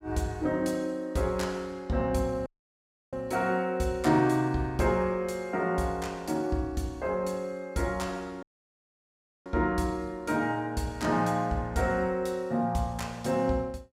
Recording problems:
dropout; at 2.5 s for 0.5 s and at 8.5 s for 1 s

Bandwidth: 16 kHz